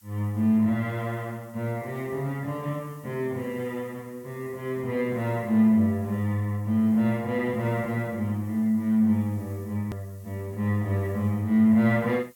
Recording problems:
background hiss; slope +1 dB per octave, SNR 28 dB
hard cut with a click; at 10 s

